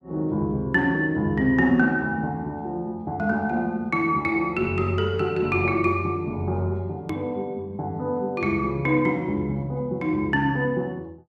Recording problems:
click at an edit; at 7 s

